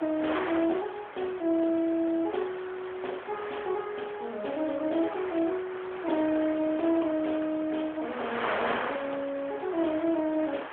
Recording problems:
telephone audio; 260 Hz to 3.7 kHz, AMR-NB
wind on the microphone; below 1.9 kHz, SNR 7 dB

